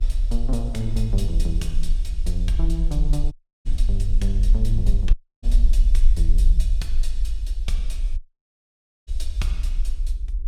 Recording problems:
hum; 50 Hz, harmonics up to 400 Hz, SNR 30 dB
low-frequency rumble; below 42 Hz, SNR -6 dB
audio cutting out; at 3.5 s, at 5 s and at 8 s for 1 s

